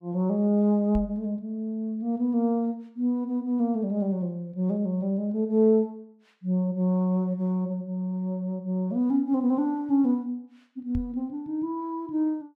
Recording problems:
microphone bump; at 1 s and at 11 s; peak -2 dB vs average level

